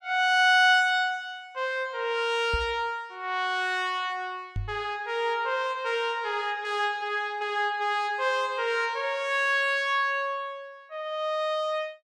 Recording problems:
microphone bump; at 2.5 s and at 4.5 s; peak -3 dB vs average level

